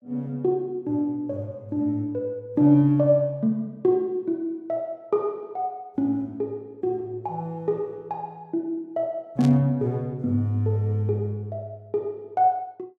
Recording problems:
burst of static; at 9.5 s; peak -9 dB vs average level

